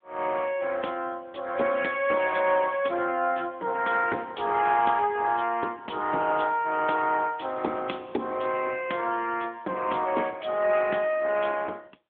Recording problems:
phone line; 260 Hz to 3.6 kHz, AMR-NB

